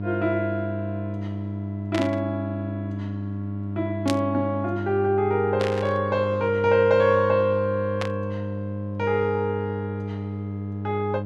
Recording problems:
hum; 50 Hz, harmonics up to 700 Hz, SNR 6 dB
burst of static; 4 times, first at 2 s; peak -1 dB vs average level

